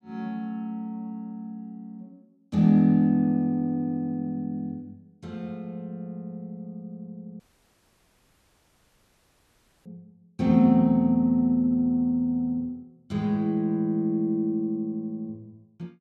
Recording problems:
dropout; at 7.5 s for 2.5 s

